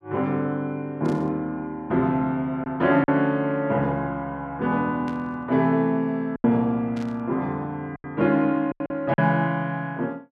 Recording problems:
lost packets; 4% of the sound replaced, filled with silence
burst of static; at 1 s, at 5 s and at 7 s; peak -15 dB vs average level

